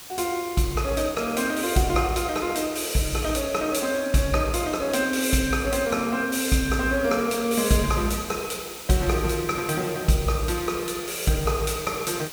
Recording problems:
hiss; slope 0 dB per octave, SNR 14 dB

